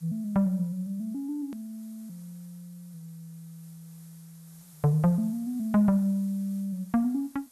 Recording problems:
hiss; SNR 27 dB
click at an edit; at 1.5 s

